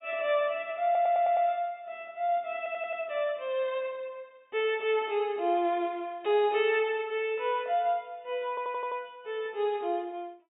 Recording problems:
treble cut off; nothing above 4 kHz
stutter; at 1 s, at 2.5 s and at 8.5 s

